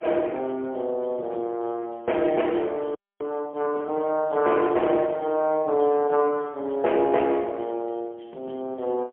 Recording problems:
phone line; 300 Hz to 3.1 kHz, AMR-NB, then MP3
frozen audio; at 3 s

